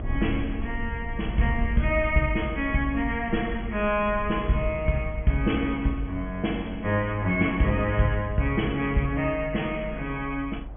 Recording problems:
treble cut off; nothing above 3.4 kHz
low-frequency rumble; below 78 Hz, SNR 11 dB
wind on the microphone; below 860 Hz, SNR 26 dB

